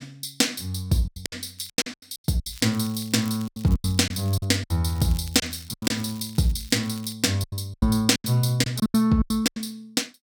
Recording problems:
packet loss; 14% of the sound replaced, filled with silence
crackling; at 1.5 s, from 2.5 to 4.5 s and from 5 to 7 s; loose cable, SNR 22 dB

